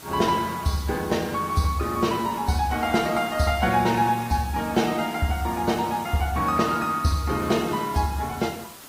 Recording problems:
lossy compression; AAC, log-spectral distance 5 dB, nothing above 15.5 kHz
hiss; slope -2 dB per octave, SNR 17 dB

